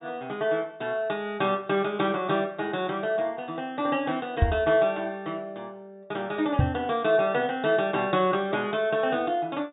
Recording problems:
treble cut off; nothing above 4 kHz
microphone bump; at 4.5 s and at 6.5 s; peak +8 dB vs average level

